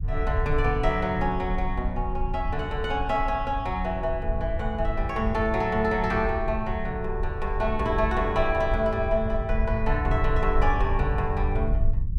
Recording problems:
rumble; below 70 Hz, SNR 4 dB

